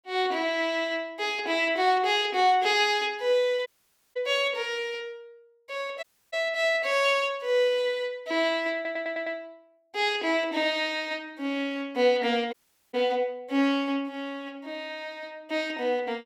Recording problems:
dropout; at 3.5 s, at 6 s and at 13 s
stutter; at 9 s

